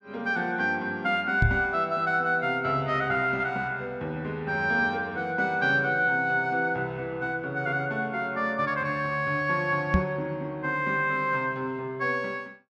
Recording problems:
microphone thump; at 1.5 s and at 10 s; peak +7 dB vs average level

